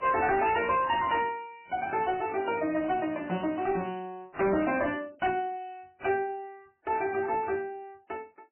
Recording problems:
lossy codec; MP3, then AAC, log-spectral distance 3 dB, nothing above 2.7 kHz
distorted audio; hard clipping, uneven, signal-to-distortion ratio 10 dB

